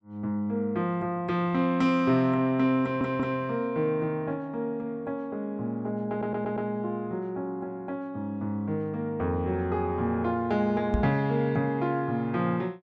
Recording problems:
audio stuttering; at 3 s and at 6 s
microphone thump; at 11 s; peak +6 dB vs average level

